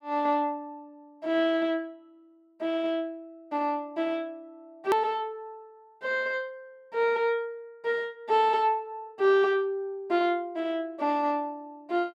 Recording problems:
edit click; at 5 s

